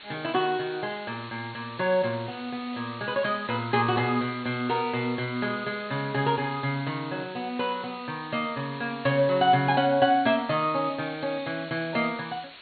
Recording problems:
treble missing; nothing above 4.4 kHz
codec artefacts; G.722, log-spectral distance 15 dB
background hiss; SNR 17 dB

